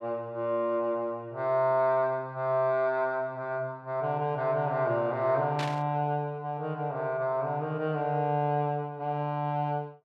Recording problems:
static burst; at 5.5 s; peak -3 dB vs average level

